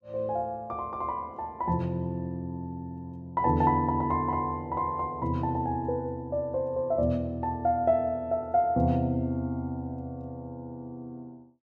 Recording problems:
none

